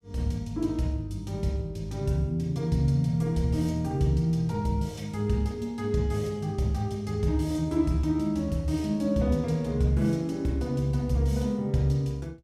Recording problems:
none

